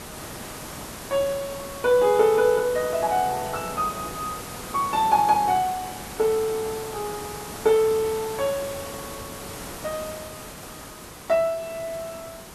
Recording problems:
hiss; slope -4 dB per octave, SNR 12 dB

